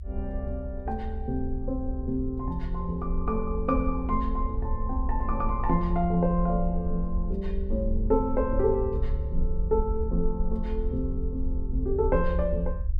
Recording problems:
low-frequency rumble; below 68 Hz, SNR 3 dB

